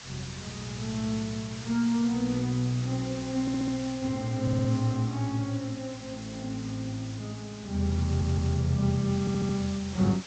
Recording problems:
treble cut off; nothing above 8 kHz
background hiss; slope 0 dB per octave, SNR 14 dB
stutter; 4 times, first at 3.5 s

